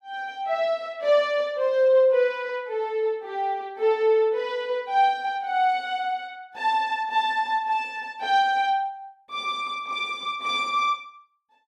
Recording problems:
none

